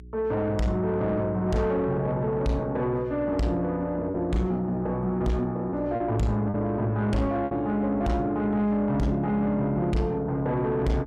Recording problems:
distorted audio; soft clipping, signal-to-distortion ratio 10 dB
hum; 60 Hz, harmonics up to 420 Hz, SNR 19 dB
packet loss; 1.7% of the sound replaced, filled with repeated pitch periods

